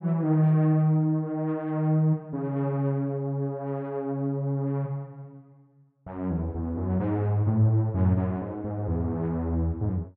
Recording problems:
none

